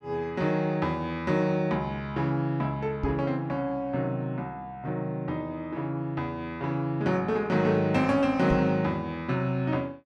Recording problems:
knock on the microphone; at 3 s and at 8.5 s; peak +2 dB vs average level

